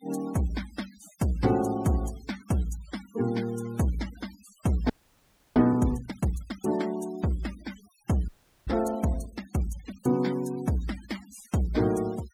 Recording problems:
noise reduction artefacts; signal-to-artefact ratio 19 dB
frozen audio; at 5 s for 0.5 s and at 8.5 s

